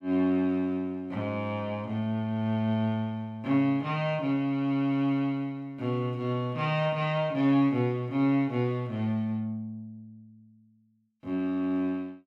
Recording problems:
none

